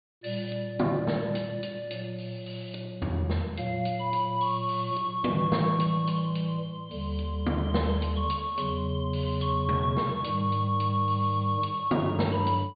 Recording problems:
treble cut off; nothing above 4.6 kHz

